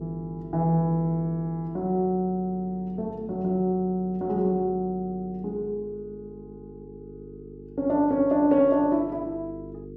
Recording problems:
hum; 50 Hz, harmonics up to 450 Hz, SNR 17 dB

